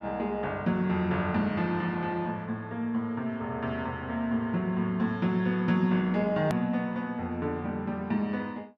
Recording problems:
edit click; at 6.5 s

